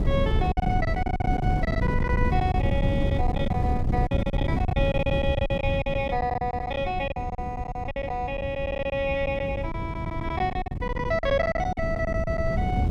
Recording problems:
wind on the microphone; below 180 Hz, SNR 0 dB
packet loss; 16% of the sound replaced, filled with silence

